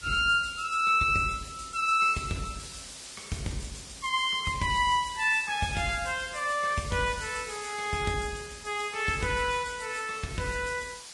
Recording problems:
codec artefacts; Vorbis, log-spectral distance 10 dB, nothing above 10.7 kHz
background hiss; slope +2 dB per octave, SNR 15 dB

